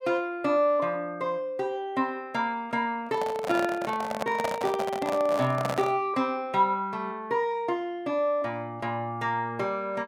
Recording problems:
microphone handling noise; from 3 to 6 s; peak +2 dB vs average level

